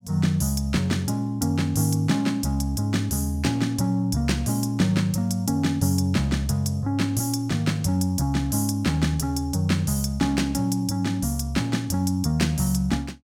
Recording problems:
none

